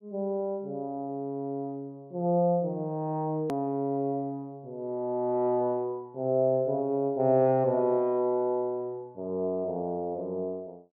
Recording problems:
hard cut with a click; at 3.5 s

